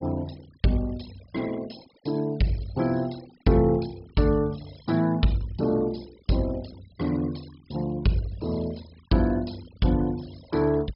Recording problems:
treble missing; nothing above 5.5 kHz
denoising artefacts; signal-to-artefact ratio 22 dB

